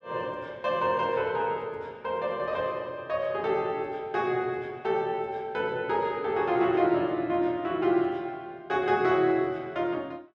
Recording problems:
none

